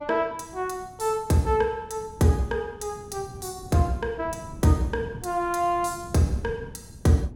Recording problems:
wind on the microphone; below 200 Hz, SNR 18 dB

